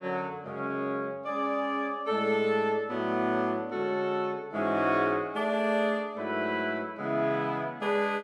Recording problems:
none

